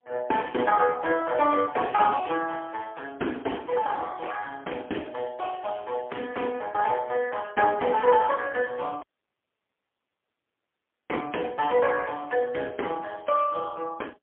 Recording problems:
phone line; 220 Hz to 3.2 kHz, AMR-NB, then MP3
audio cutting out; at 9 s for 2 s

